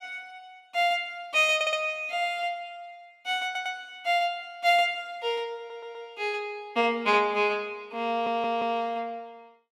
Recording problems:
audio stuttering; 4 times, first at 1.5 s

